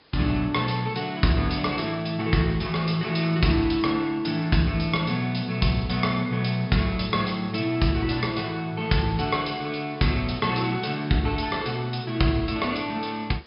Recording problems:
treble cut off; nothing above 5.5 kHz
hiss; slope -3 dB per octave, SNR 27 dB

